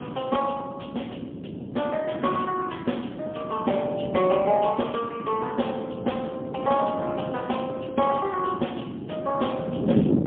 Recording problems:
telephone audio; 190 Hz to 3.4 kHz, AMR-NB, then MP3
wind on the microphone; below 350 Hz, SNR 6 dB

